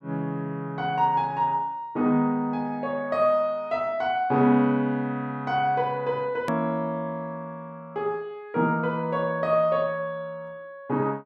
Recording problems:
edit click; at 6.5 s

